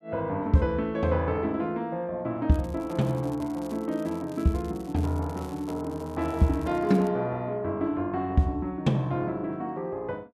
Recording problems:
crackling; from 2.5 to 7 s; loose cable, SNR 25 dB

